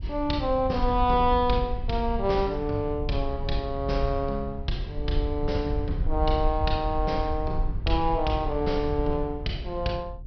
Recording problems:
treble cut off; nothing above 5.5 kHz
wind noise; below 66 Hz, SNR 6 dB

